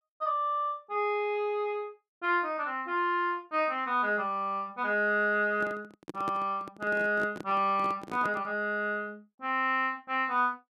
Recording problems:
handling noise; from 5.5 to 8.5 s; peak -5 dB vs average level

